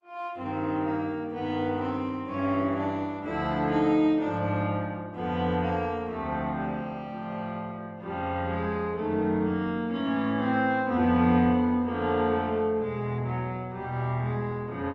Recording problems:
lossy compression; Opus, log-spectral distance 2 dB

